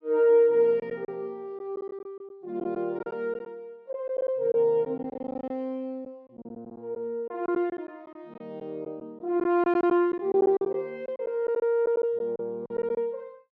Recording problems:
lost packets; 10% of the sound replaced, filled with silence

